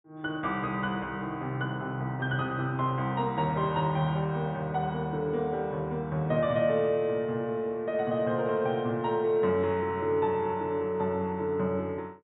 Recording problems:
low-pass filter; nothing above 4 kHz

